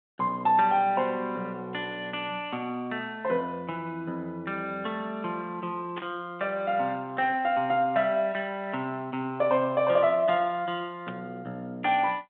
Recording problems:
telephone audio; 150 Hz to 3.7 kHz, G.726
burst of static; at 6 s and at 11 s; peak -7 dB vs average level

